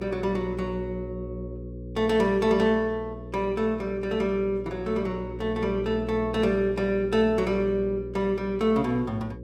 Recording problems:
electrical hum; 60 Hz, harmonics up to 540 Hz, SNR 12 dB

